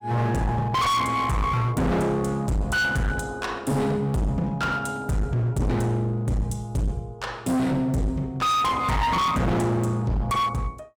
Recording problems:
distorted audio; hard clipping, uneven, signal-to-distortion ratio 5 dB

